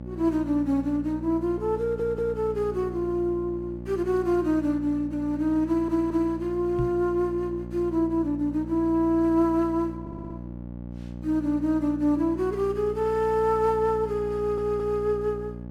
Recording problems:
hum; 60 Hz, harmonics up to 900 Hz, SNR 12 dB
stutter; 4 times, first at 2 s
microphone bump; at 7 s; peak -2 dB vs average level

